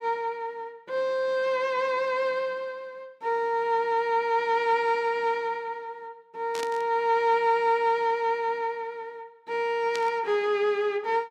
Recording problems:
static burst; at 6.5 s and at 10 s; peak -6 dB vs average level

